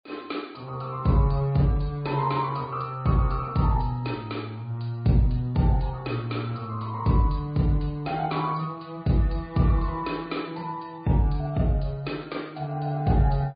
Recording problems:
low-pass filter; nothing above 4.8 kHz
codec artefacts; MP3, log-spectral distance 3 dB

